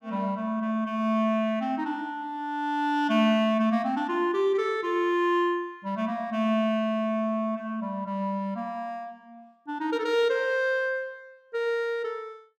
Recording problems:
none

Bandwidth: 16 kHz